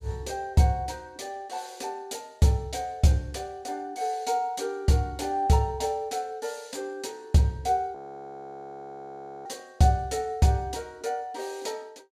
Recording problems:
audio freezing; at 8 s for 1.5 s

